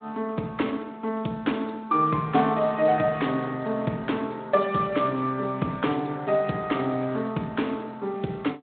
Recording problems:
phone line; 130 Hz to 3.7 kHz, Speex

